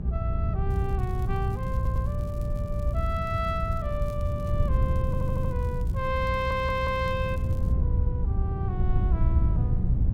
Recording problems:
hum; 60 Hz, harmonics up to 480 Hz, SNR 3 dB
wind noise; below 100 Hz, SNR -4 dB
crackle; from 0.5 to 5 s and from 5 to 7.5 s; loose cable, SNR 25 dB
stutter; at 2 s, at 5 s and at 6.5 s

